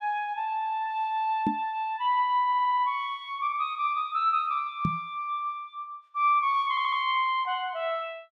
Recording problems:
knock on the microphone; at 1.5 s and at 5 s; peak +3 dB vs average level
stutter; at 2.5 s and at 6.5 s

